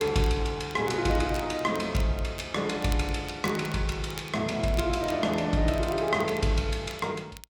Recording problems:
crackling; vinyl, SNR 20 dB

